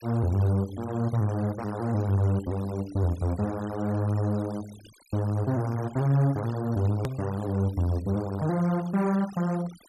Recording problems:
noise reduction artefacts; signal-to-artefact ratio 21 dB
click at an edit; at 7 s

